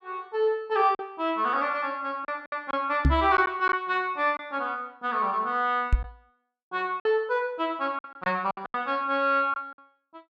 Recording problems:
packet loss; 6% of the sound replaced, filled with silence
microphone bump; at 3 s and at 6 s; peak +8 dB vs average level

